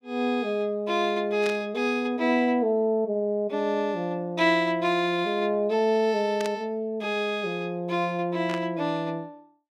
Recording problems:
static burst; at 1.5 s, at 6.5 s and at 8.5 s; peak -6 dB vs average level

